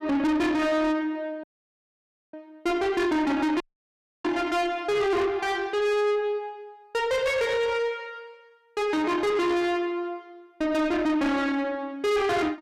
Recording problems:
distortion; soft clipping, signal-to-distortion ratio 8 dB
dropout; at 1.5 s for 1 s and at 3.5 s for 0.5 s

